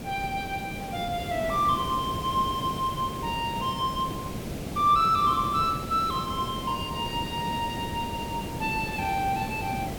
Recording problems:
hiss; SNR 7 dB

